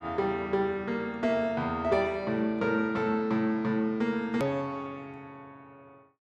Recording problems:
edit click; at 4.5 s

